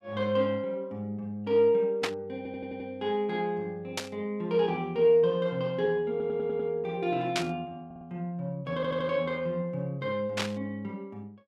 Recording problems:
static burst; 4 times, first at 2 s; peak +4 dB vs average level
stutter; 4 times, first at 2.5 s

